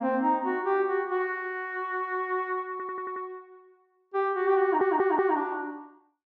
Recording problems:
audio stuttering; at 2.5 s and at 4.5 s

